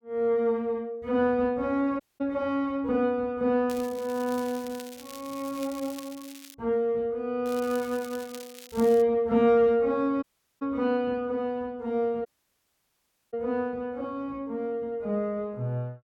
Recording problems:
dropout; at 2 s, at 10 s and at 12 s for 1 s
crackle; from 3.5 to 6.5 s and from 7.5 to 9 s; loose cable, SNR 18 dB

